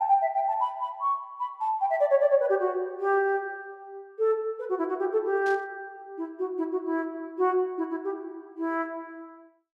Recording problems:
burst of static; at 5.5 s; peak -13 dB vs average level

